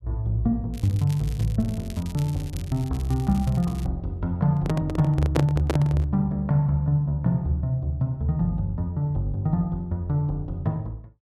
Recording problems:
crackle; from 0.5 to 4 s; loose cable, SNR 21 dB
microphone handling noise; from 4.5 to 6 s; peak +4 dB vs average level

